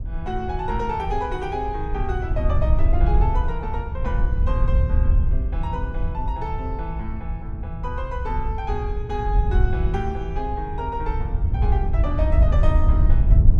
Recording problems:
wind on the microphone; below 76 Hz, SNR -5 dB

